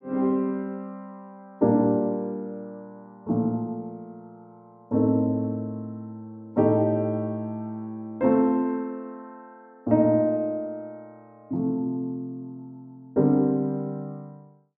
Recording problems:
none

